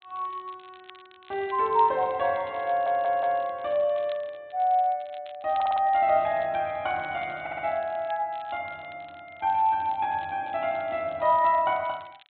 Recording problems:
treble missing; nothing above 4 kHz
crackling; vinyl, SNR 27 dB
stutter; at 2.5 s, at 5.5 s and at 7.5 s

